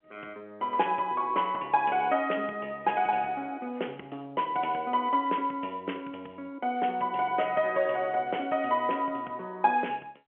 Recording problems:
phone line; 300 Hz to 3.3 kHz, G.711

